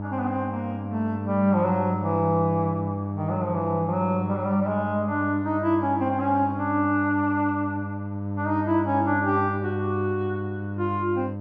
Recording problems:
electrical hum; 50 Hz, harmonics up to 1 kHz, SNR 6 dB

